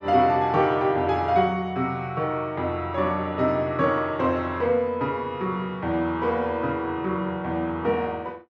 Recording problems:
none

